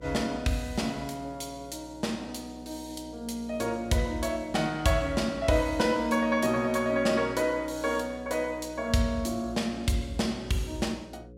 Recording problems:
hum; 60 Hz, harmonics up to 540 Hz, SNR 19 dB

